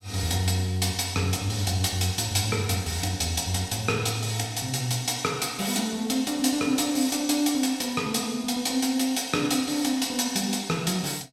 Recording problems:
none

